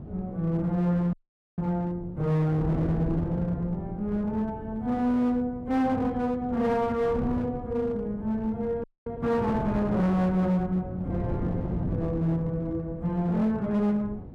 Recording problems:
distorted audio; hard clipping, uneven, signal-to-distortion ratio 10 dB
wind noise; below 260 Hz, SNR 9 dB
audio freezing; at 1 s and at 9 s

